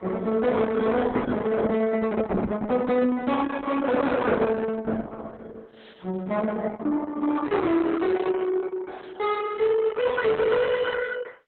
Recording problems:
lossy codec; AAC, then Opus, log-spectral distance 4 dB, nothing above 3.8 kHz
distorted audio; soft clipping, signal-to-distortion ratio 5 dB

